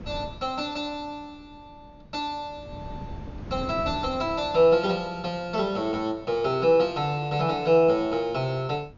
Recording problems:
low-pass filter; nothing above 6.9 kHz
wind on the microphone; below 280 Hz, SNR 18 dB

